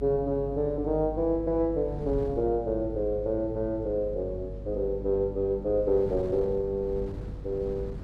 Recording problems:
hum; 50 Hz, harmonics up to 550 Hz, SNR 12 dB
wind on the microphone; below 210 Hz, SNR 16 dB

